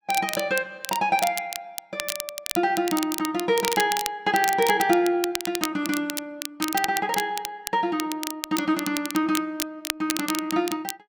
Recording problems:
crackling; vinyl, SNR 6 dB

